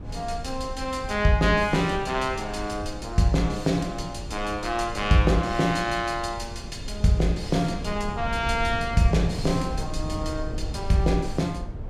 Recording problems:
rumble; below 120 Hz, SNR 11 dB

